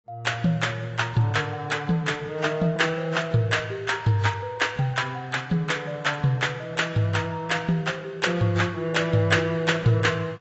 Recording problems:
lossy compression; AAC, log-spectral distance 3 dB, nothing above 7.8 kHz

